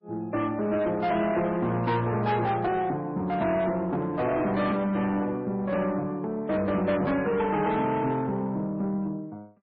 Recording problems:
lossy compression; MP3, log-spectral distance 2 dB, nothing above 4.8 kHz
distortion; soft clipping, signal-to-distortion ratio 11 dB

